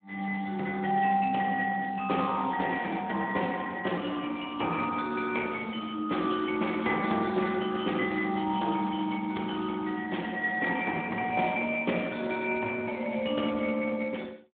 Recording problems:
telephone audio; 240 Hz to 3.5 kHz, Speex

